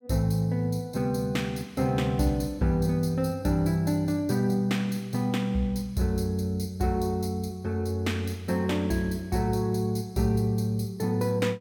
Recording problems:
none

